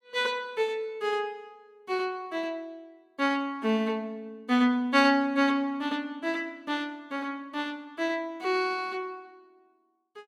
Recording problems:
none

